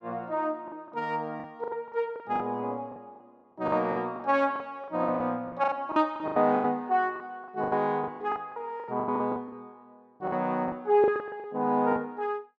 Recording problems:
lost packets; 16% of the sound replaced, filled with the last packet

